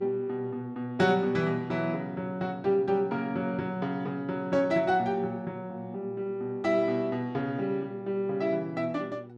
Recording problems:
electrical hum; 60 Hz, harmonics up to 960 Hz, SNR 18 dB

